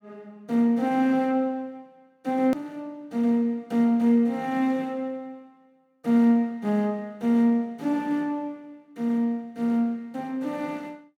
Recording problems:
click at an edit; at 2.5 s

